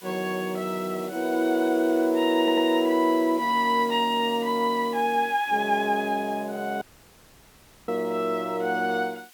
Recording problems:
hiss; slope +2 dB per octave, SNR 22 dB
stutter; at 2.5 s
dropout; at 7 s for 1 s

